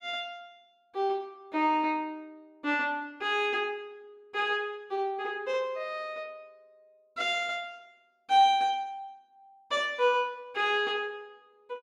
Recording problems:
none

